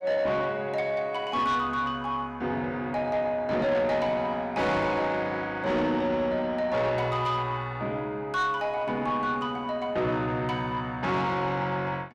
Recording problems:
distorted audio; soft clipping, signal-to-distortion ratio 11 dB

